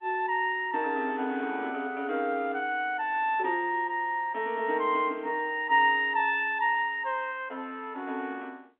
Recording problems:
phone line; 280 Hz to 3.7 kHz, G.711

